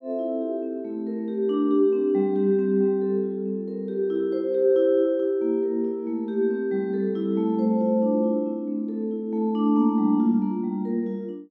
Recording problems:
none

